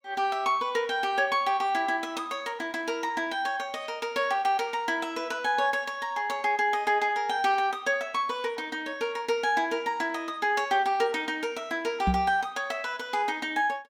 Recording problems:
knock on the microphone; at 12 s; peak +4 dB vs average level

